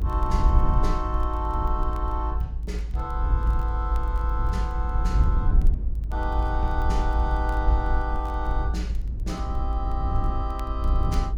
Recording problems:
low-frequency rumble; below 60 Hz, SNR -4 dB
crackling; vinyl, SNR 28 dB

